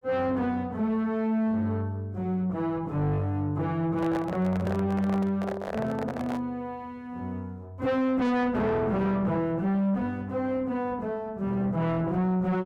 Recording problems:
distortion; soft clipping, signal-to-distortion ratio 6 dB
handling noise; from 4 to 6.5 s; peak -2 dB vs average level

